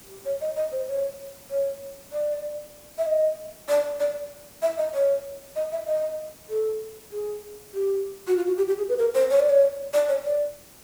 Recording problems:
background hiss; SNR 21 dB

